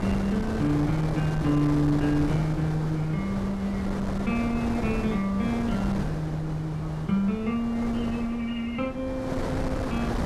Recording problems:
wind on the microphone; below 590 Hz, SNR 5 dB

